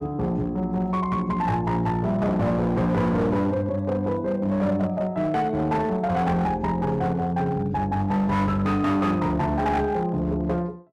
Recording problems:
distortion; hard clipping, signal-to-distortion ratio 11 dB

